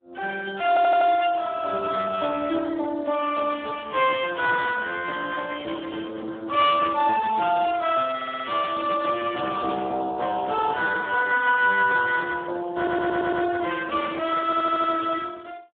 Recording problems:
telephone audio; 300 Hz to 2.9 kHz, Speex
stutter; 4 times, first at 0.5 s
crackling; from 6.5 to 9 s; loose cable, SNR 27 dB

